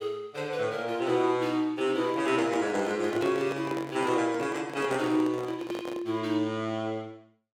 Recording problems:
handling noise; from 2 to 6 s; peak -2 dB vs average level

